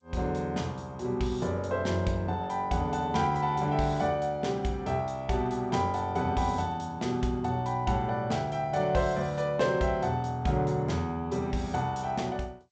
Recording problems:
codec artefacts; G.722, log-spectral distance 2 dB, nothing above 7.6 kHz

